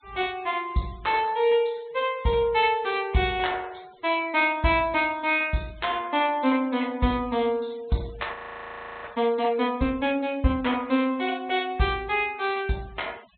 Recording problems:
low-pass filter; nothing above 4 kHz
noise reduction artefacts; signal-to-artefact ratio 26 dB
frozen audio; at 8.5 s for 0.5 s

